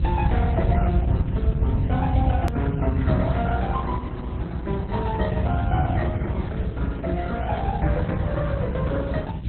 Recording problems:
lossy codec; MP3, then Opus, log-spectral distance 4 dB, nothing above 13.1 kHz
electrical hum; 60 Hz, harmonics up to 360 Hz, SNR 9 dB
background hiss; SNR 22 dB
low-frequency rumble; below 110 Hz, SNR -6 dB
click at an edit; at 2.5 s

